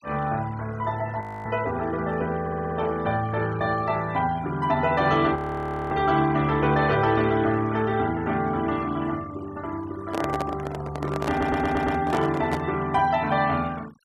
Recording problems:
denoising artefacts; signal-to-artefact ratio 20 dB
audio freezing; at 1 s and at 5.5 s for 0.5 s
audio stuttering; at 2.5 s and at 11 s
handling noise; from 10 to 13 s; peak 0 dB vs average level

